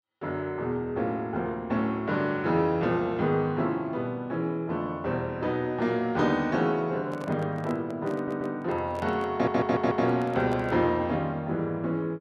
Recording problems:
microphone handling noise; from 7 to 11 s; peak -6 dB vs average level
stutter; at 8 s and at 9.5 s

